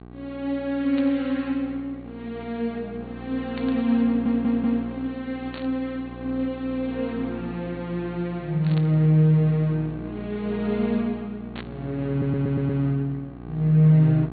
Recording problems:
low-pass filter; nothing above 4.4 kHz
hum; 60 Hz, harmonics up to 1.6 kHz, SNR 15 dB
burst of static; 5 times, first at 1 s; peak -9 dB vs average level
audio stuttering; at 4 s and at 12 s

